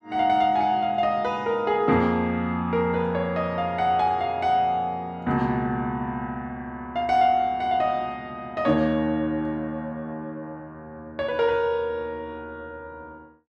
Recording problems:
none

